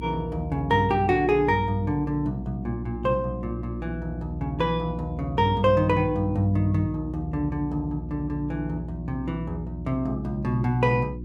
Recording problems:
electrical hum; 60 Hz, harmonics up to 360 Hz, SNR 9 dB

